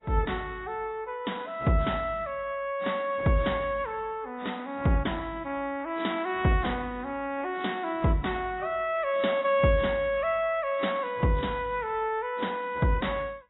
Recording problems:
lossy codec; AAC, log-spectral distance 3 dB, nothing above 3.8 kHz

